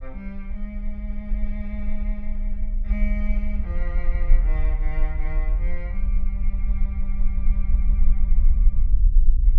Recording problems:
low-frequency rumble; below 42 Hz, strongest tone 22 Hz, SNR -12 dB

